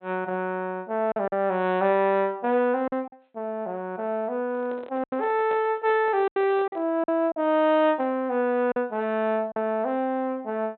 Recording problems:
treble missing; nothing above 4 kHz
packet loss; 5% of the sound replaced, filled with silence
handling noise; from 4.5 to 7 s; peak -9 dB vs average level

